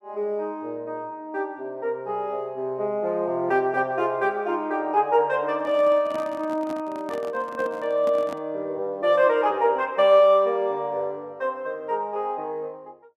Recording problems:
handling noise; from 5.5 to 8.5 s; peak -9 dB vs average level

